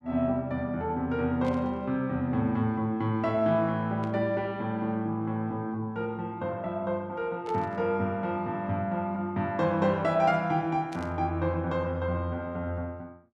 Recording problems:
static burst; 4 times, first at 1.5 s; peak -13 dB vs average level

